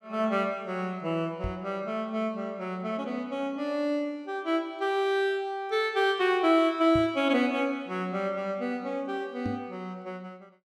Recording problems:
knock on the microphone; at 1.5 s, at 7 s and at 9.5 s; peak -2 dB vs average level

